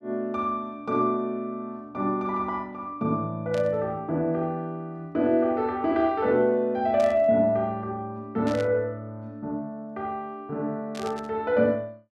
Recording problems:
burst of static; 4 times, first at 3.5 s; peak -10 dB vs average level

